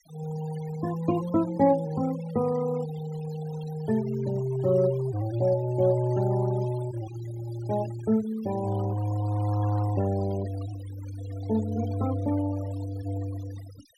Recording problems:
denoising artefacts; signal-to-artefact ratio 17 dB

